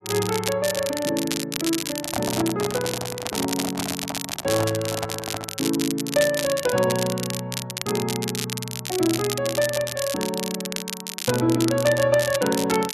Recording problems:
crackling; vinyl, SNR 5 dB
microphone handling noise; from 2 to 5.5 s; peak +1 dB vs average level

